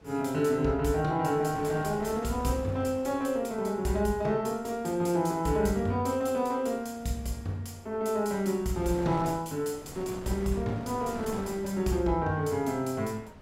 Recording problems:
wind on the microphone; below 860 Hz, SNR 17 dB

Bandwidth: 16.5 kHz